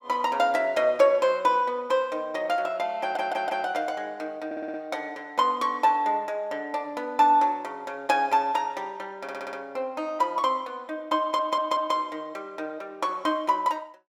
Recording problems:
stutter; 4 times, first at 3 s

